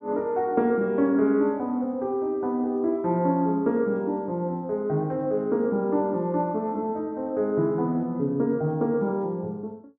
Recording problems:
none

